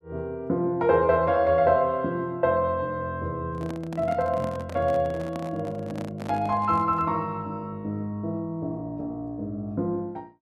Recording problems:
handling noise; from 3.5 to 7 s; peak -7 dB vs average level

